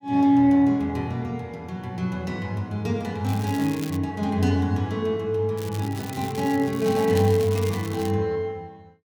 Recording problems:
crackle; at 3.5 s and from 5.5 to 8 s; loose cable, SNR 16 dB

